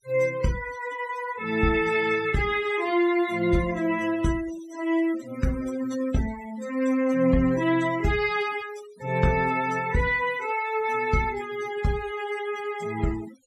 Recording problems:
denoising artefacts; signal-to-artefact ratio 16 dB

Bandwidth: 14 kHz